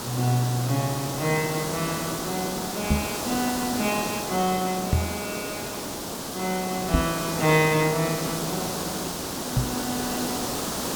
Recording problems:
background hiss; SNR 3 dB
microphone thump; 4 times, first at 3 s; peak +9 dB vs average level

